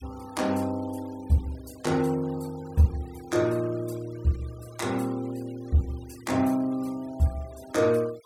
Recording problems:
denoising artefacts; signal-to-artefact ratio 22 dB

